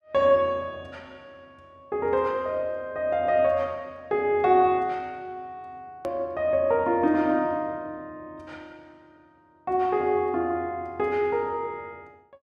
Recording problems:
edit click; at 6 s

